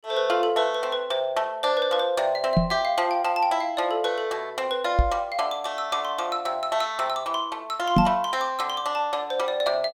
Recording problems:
microphone bump; at 2.5 s, at 5 s and at 8 s; peak +8 dB vs average level

